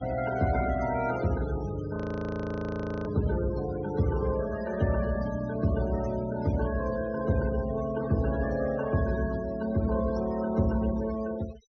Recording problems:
low-pass filter; nothing above 6.2 kHz
denoising artefacts; signal-to-artefact ratio 15 dB
frozen audio; at 2 s for 1 s

